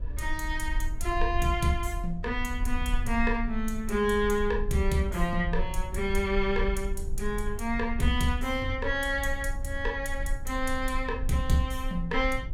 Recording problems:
low-frequency rumble; below 50 Hz, strongest tone 22 Hz, SNR 6 dB

